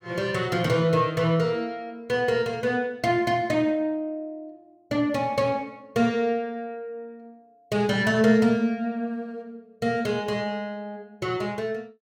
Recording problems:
none

